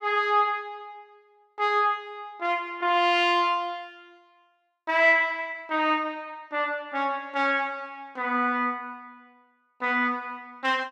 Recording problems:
none

